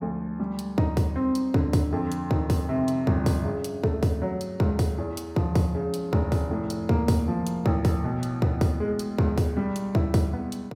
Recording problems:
none

